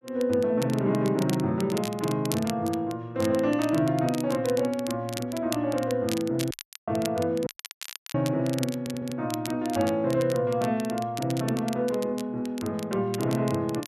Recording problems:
crackling; vinyl, SNR 13 dB
audio cutting out; at 6.5 s and at 7.5 s for 0.5 s
stutter; at 9 s

